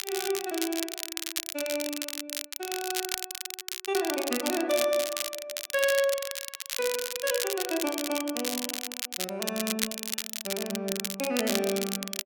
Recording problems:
crackling; vinyl, SNR 2 dB

